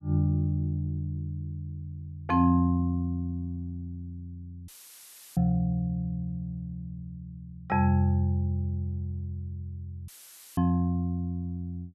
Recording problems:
dropout; at 4.5 s for 0.5 s and at 10 s; filled with static

